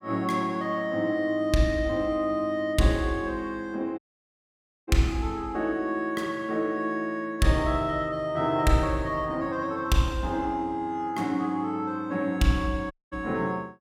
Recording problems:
dropout; at 4 s for 1 s and at 13 s

